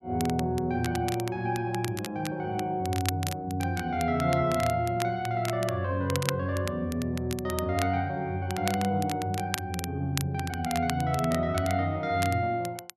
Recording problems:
crackle; vinyl, SNR 11 dB

